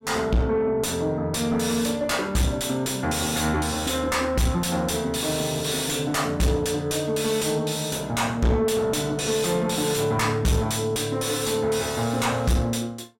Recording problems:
distortion; soft clipping, signal-to-distortion ratio 5 dB

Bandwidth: 16.5 kHz